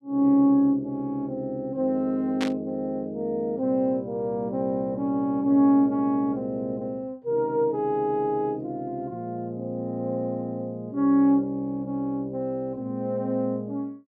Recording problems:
static burst; at 2.5 s; peak -2 dB vs average level

